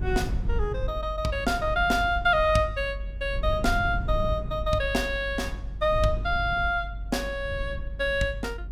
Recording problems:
low-frequency rumble; below 82 Hz, SNR 7 dB

